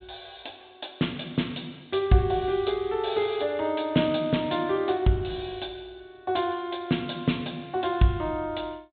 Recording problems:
treble cut off; nothing above 4 kHz

